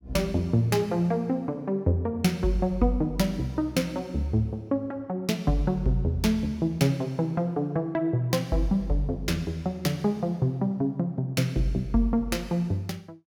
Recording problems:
none

